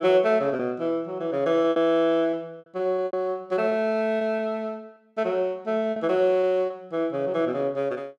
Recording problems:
lost packets; 6% of the sound replaced, filled with repeated pitch periods

